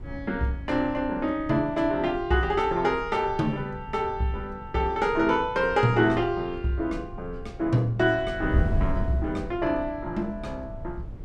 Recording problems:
wind on the microphone; below 120 Hz, SNR 12 dB

